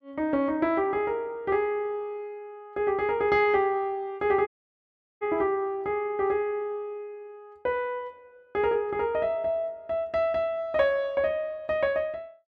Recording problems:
audio cutting out; at 4.5 s for 0.5 s

